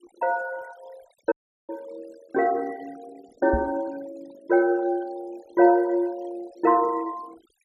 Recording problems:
denoising artefacts; signal-to-artefact ratio 23 dB
audio cutting out; at 1.5 s
microphone thump; at 3.5 s; peak 0 dB vs average level

